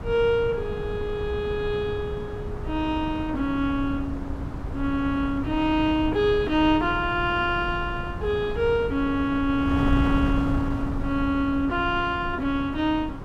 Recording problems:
wind noise; below 210 Hz, SNR 7 dB

